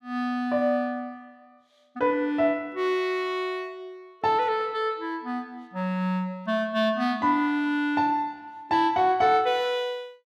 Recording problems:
none

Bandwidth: 14.5 kHz